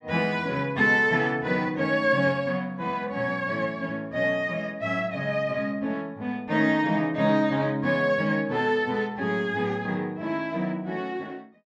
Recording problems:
none

